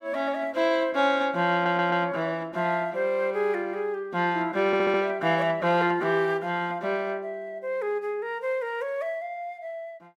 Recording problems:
stutter; at 1.5 s and at 4.5 s

